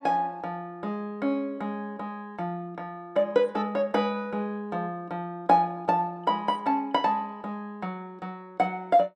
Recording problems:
none

